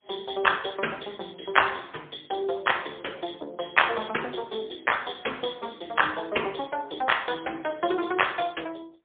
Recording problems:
phone line; 300 Hz to 3.4 kHz, AMR-NB, then MP3

